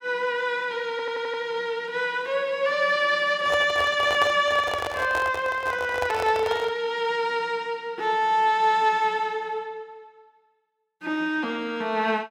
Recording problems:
stutter; at 1 s
handling noise; from 3.5 to 7 s; peak -2 dB vs average level

